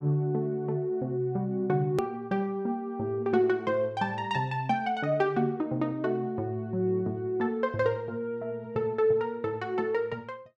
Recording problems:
click at an edit; at 2 s

